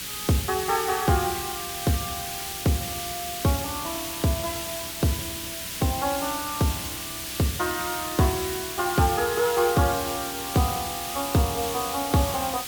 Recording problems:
hum; 60 Hz, harmonics up to 600 Hz, SNR 24 dB
hiss; SNR 4 dB

